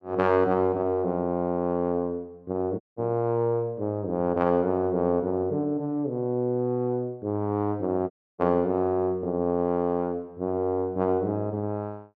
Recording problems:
dropout; at 3 s and at 8 s

